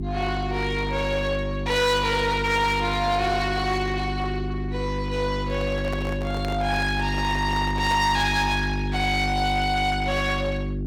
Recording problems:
distorted audio; hard clipping, uneven, signal-to-distortion ratio 11 dB
hum; 50 Hz, harmonics up to 400 Hz, SNR 5 dB
microphone handling noise; from 5.5 to 8 s; peak -6 dB vs average level

